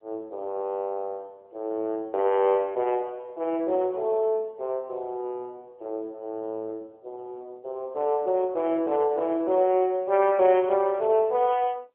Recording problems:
phone line; 300 Hz to 3.3 kHz, AMR-NB

